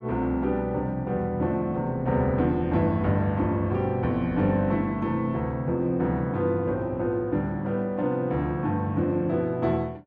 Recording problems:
none

